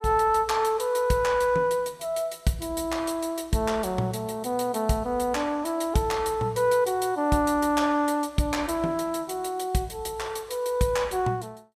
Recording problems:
none

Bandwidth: 15.5 kHz